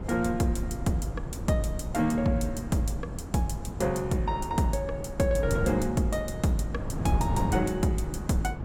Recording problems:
wind noise; below 230 Hz, SNR 6 dB

